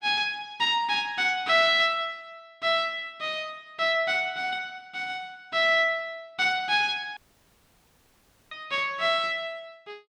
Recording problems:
dropout; at 7 s for 1.5 s

